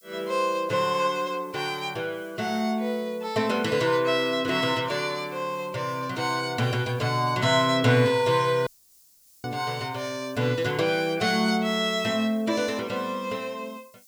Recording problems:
background hiss; SNR 28 dB
audio cutting out; at 8.5 s for 1 s

